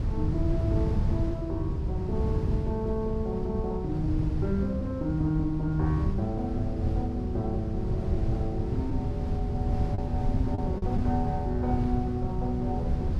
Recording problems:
wind on the microphone; below 130 Hz, SNR -1 dB
lost packets; 0.9% of the sound replaced, filled with the last packet

